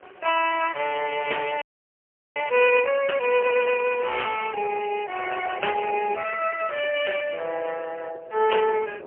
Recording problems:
phone line; 370 Hz to 3.1 kHz, AMR-NB, then MP3
wind on the microphone; below 620 Hz, SNR 20 dB
frozen audio; at 1.5 s for 0.5 s

